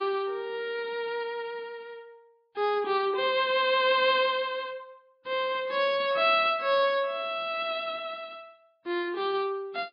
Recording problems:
lossy compression; MP3, log-spectral distance 2 dB, nothing above 4.2 kHz

